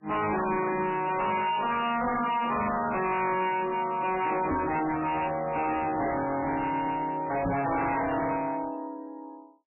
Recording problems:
lossy compression; MP3, log-spectral distance 6 dB, nothing above 2.7 kHz
distortion; hard clipping, signal-to-distortion ratio 5 dB
microphone bump; at 4.5 s and at 7.5 s; peak +3 dB vs average level

